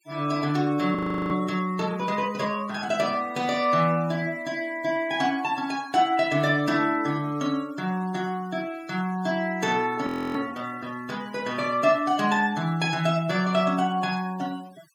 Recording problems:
noise reduction artefacts; signal-to-artefact ratio 22 dB
audio freezing; at 1 s and at 10 s

